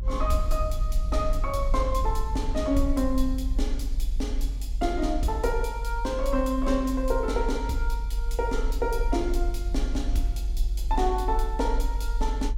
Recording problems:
low-frequency rumble; below 48 Hz, strongest tone 28 Hz, SNR 1 dB

